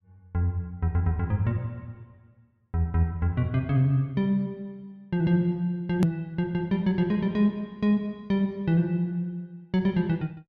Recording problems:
edit click; at 6 s

